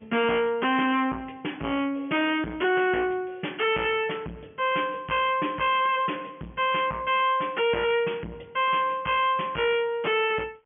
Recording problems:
phone line; 130 Hz to 3.3 kHz, G.711
distortion; soft clipping, signal-to-distortion ratio 7 dB

